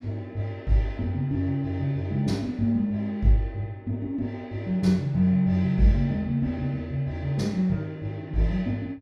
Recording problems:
none

